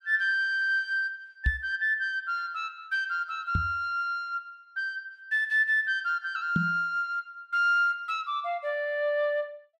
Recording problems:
knock on the microphone; at 1.5 s, at 3.5 s and at 6.5 s; peak +4 dB vs average level

